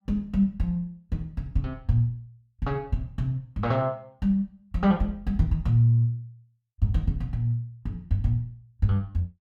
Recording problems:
none

